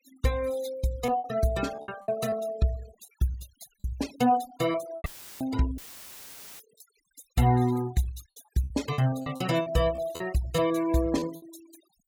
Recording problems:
denoising artefacts; signal-to-artefact ratio 18 dB
lost packets; 9% of the sound replaced, filled with repeated pitch periods
audio cutting out; at 5 s and at 6 s for 1 s; filled with static

